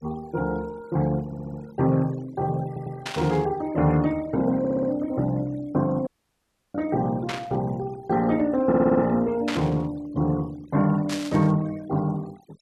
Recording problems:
noise reduction artefacts; signal-to-artefact ratio 23 dB
audio stuttering; 4 times, first at 1.5 s
static burst; 4 times, first at 3 s; peak -1 dB vs average level
dropout; at 6 s for 0.5 s

